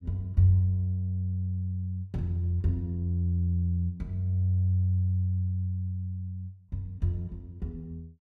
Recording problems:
none

